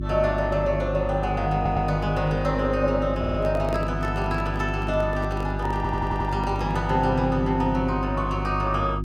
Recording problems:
hum; 50 Hz, harmonics up to 350 Hz, SNR 4 dB
stutter; at 1.5 s, at 3 s and at 6 s
microphone handling noise; from 3 to 7 s; peak -5 dB vs average level

